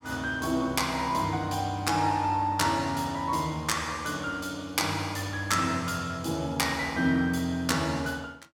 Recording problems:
none

